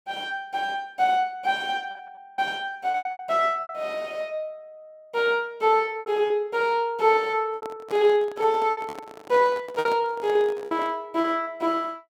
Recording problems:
lost packets; 10% of the sound replaced, filled with repeated pitch periods
handling noise; from 7.5 to 11 s; peak -7 dB vs average level

